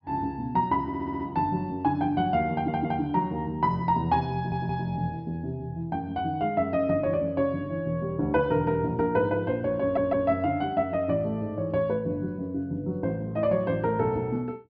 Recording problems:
treble missing; nothing above 5.5 kHz
audio stuttering; 4 times, first at 1 s

